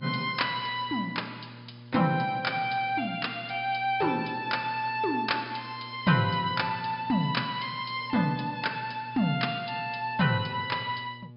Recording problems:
low-pass filter; nothing above 5.5 kHz
hum; 60 Hz, harmonics up to 840 Hz, SNR 19 dB

